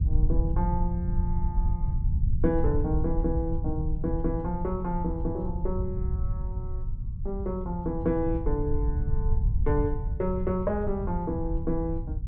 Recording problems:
low-frequency rumble; below 80 Hz, SNR 0 dB

